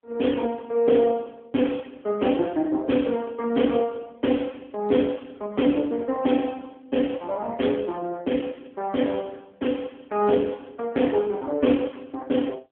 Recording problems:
telephone audio; 240 Hz to 3.4 kHz, AMR-NB

